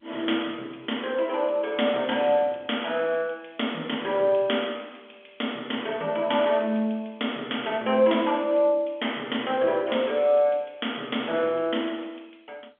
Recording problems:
phone line; 280 Hz to 3.4 kHz, G.711

